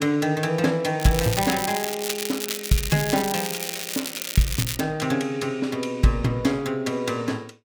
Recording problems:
crackle; from 1 to 5 s; loose cable, SNR 4 dB

